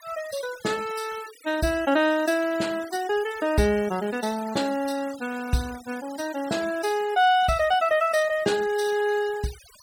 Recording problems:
denoising artefacts; signal-to-artefact ratio 17 dB

